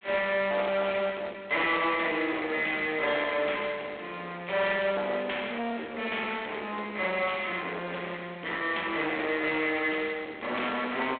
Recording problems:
phone line; 320 Hz to 3.7 kHz, G.726
distortion; hard clipping, uneven, signal-to-distortion ratio 9 dB

